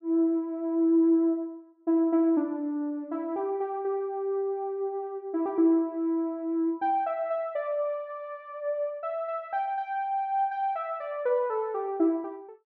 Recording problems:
none

